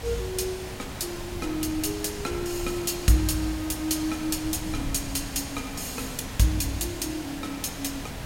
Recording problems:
hiss; slope -4 dB per octave, SNR 9 dB
wind noise; below 130 Hz, SNR 14 dB

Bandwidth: 16 kHz